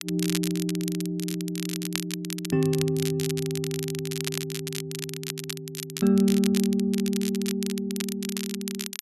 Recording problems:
crackling; vinyl, SNR 7 dB

